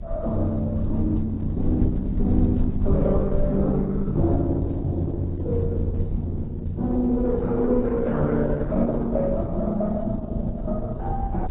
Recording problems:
lossy compression; Opus, then AAC, log-spectral distance 2 dB, nothing above 3.8 kHz
rumble; below 86 Hz, SNR 6 dB

